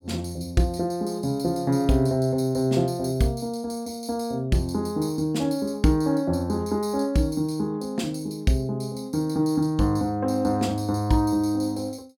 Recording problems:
none

